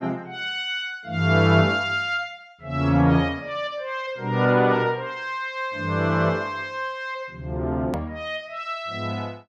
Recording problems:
click at an edit; at 8 s

